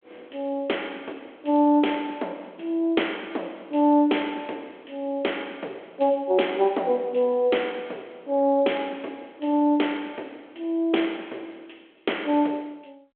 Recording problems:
phone line; 260 Hz to 3.4 kHz, G.726

